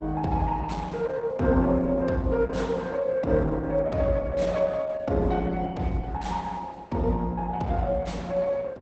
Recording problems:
lossy codec; Opus, log-spectral distance 3 dB, nothing above 8 kHz

